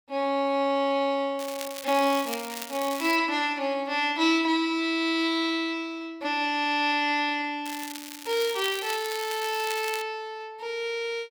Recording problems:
crackling; from 1.5 to 3 s and from 7.5 to 10 s; loose cable, SNR 11 dB

